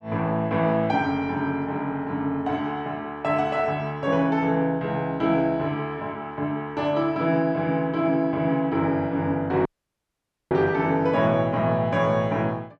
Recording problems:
dropout; at 9.5 s for 1 s

